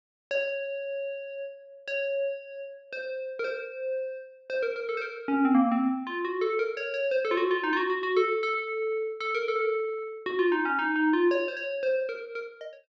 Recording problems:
none

